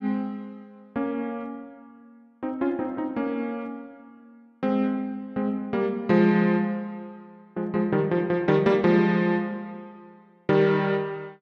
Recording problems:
none

